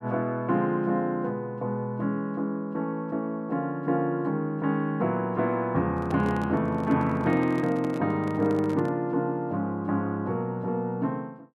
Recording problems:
handling noise; from 6 to 9 s; peak -7 dB vs average level

